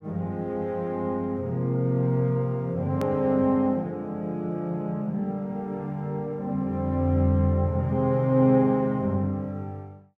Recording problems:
edit click; at 3 s

